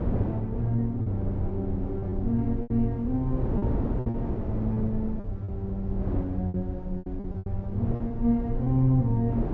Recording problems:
low-pass filter; nothing above 8 kHz
low-frequency rumble; below 72 Hz, SNR 9 dB
wind on the microphone; below 340 Hz, SNR 7 dB
packet loss; 8% of the sound replaced, filled with repeated pitch periods

